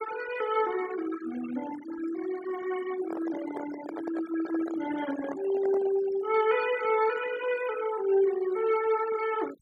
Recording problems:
noise reduction artefacts; signal-to-artefact ratio 14 dB
handling noise; from 3 to 6 s; peak -5 dB vs average level

